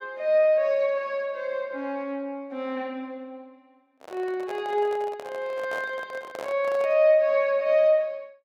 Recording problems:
microphone handling noise; from 4 to 7 s; peak -8 dB vs average level

